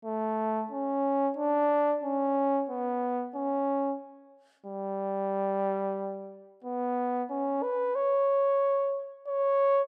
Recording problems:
none

